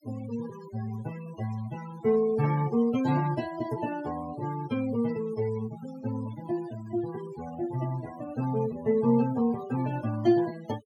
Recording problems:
noise reduction artefacts; signal-to-artefact ratio 14 dB

